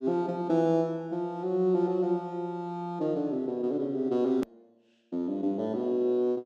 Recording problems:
hard cut with a click; at 4.5 s

